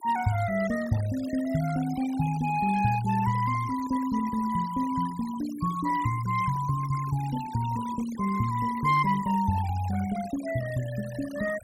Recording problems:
denoising artefacts; signal-to-artefact ratio 17 dB

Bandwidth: 16 kHz